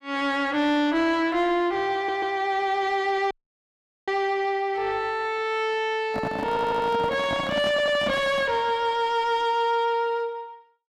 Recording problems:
distortion; soft clipping, signal-to-distortion ratio 11 dB
stutter; at 2 s, at 6.5 s and at 7.5 s
dropout; at 3.5 s for 1 s
microphone handling noise; from 6 to 8.5 s; peak -1 dB vs average level

